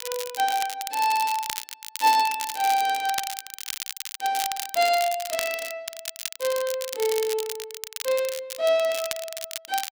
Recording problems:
crackling; vinyl, SNR 7 dB

